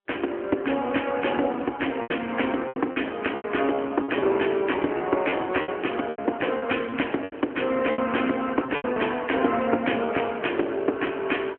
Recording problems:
phone line; 240 Hz to 3.2 kHz, AMR-NB
packet loss; 8% of the sound replaced, filled with repeated pitch periods

